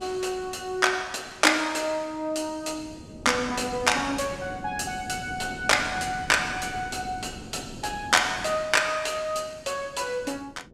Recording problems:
wind noise; below 350 Hz, SNR 16 dB

